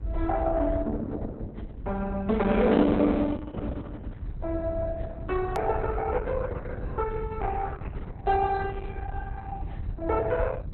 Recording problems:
codec artefacts; Opus, log-spectral distance 2 dB, nothing above 4 kHz
electrical hum; 50 Hz, harmonics up to 1.5 kHz, SNR 23 dB
low-frequency rumble; below 82 Hz, SNR 6 dB
hard cut with a click; at 5.5 s

